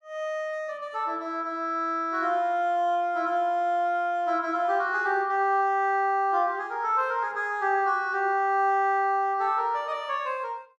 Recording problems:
none

